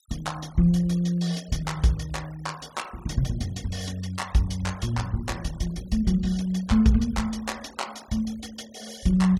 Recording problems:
denoising artefacts; signal-to-artefact ratio 21 dB

